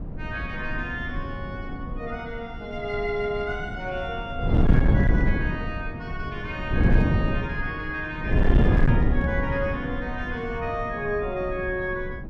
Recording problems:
distortion; hard clipping, signal-to-distortion ratio 12 dB
wind on the microphone; below 180 Hz, SNR -3 dB

